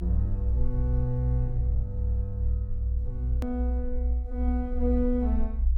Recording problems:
low-frequency rumble; below 62 Hz, strongest tone 60 Hz, SNR -2 dB
click at an edit; at 3.5 s

